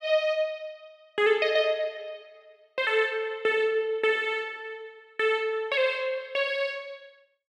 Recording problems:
none

